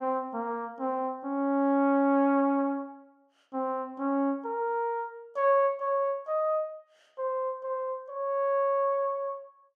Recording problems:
none

